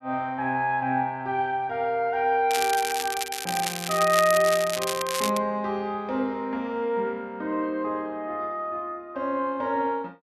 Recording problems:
crackling; from 2.5 to 5.5 s; loose cable, SNR 5 dB

